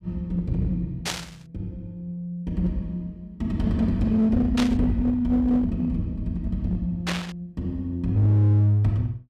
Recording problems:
distorted audio; hard clipping, uneven, signal-to-distortion ratio 10 dB
burst of static; at 1 s, at 4.5 s and at 7 s; peak +1 dB vs average level

